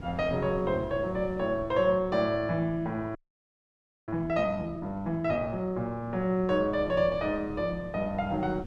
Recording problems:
wind on the microphone; below 270 Hz, SNR 16 dB
audio freezing; at 3 s for 1 s

